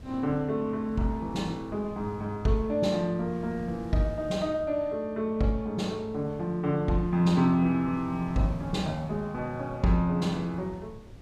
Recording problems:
wind on the microphone; below 200 Hz, SNR 18 dB

